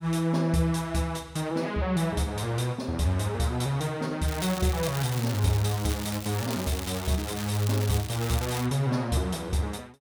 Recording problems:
crackle; from 4.5 to 8.5 s; loose cable, SNR 10 dB

